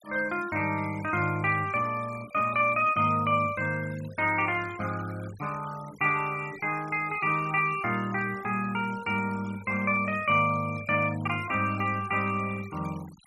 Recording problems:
denoising artefacts; signal-to-artefact ratio 20 dB

